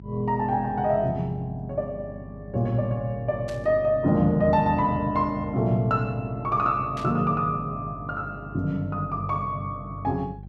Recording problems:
electrical hum; 50 Hz, harmonics up to 400 Hz, SNR 16 dB
burst of static; at 3.5 s and at 7 s; peak -11 dB vs average level

